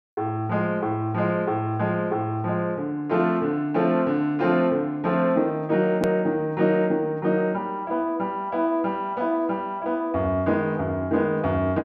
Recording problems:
click at an edit; at 6 s

